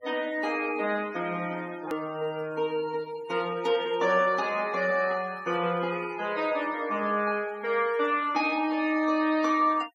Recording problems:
denoising artefacts; signal-to-artefact ratio 20 dB
click at an edit; at 2 s

